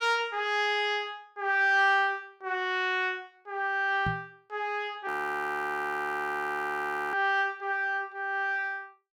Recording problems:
microphone thump; at 4 s; peak -1 dB vs average level
frozen audio; at 5 s for 2 s

